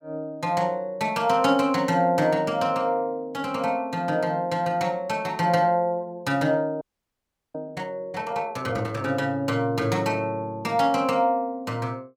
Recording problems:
frozen audio; at 7 s for 0.5 s

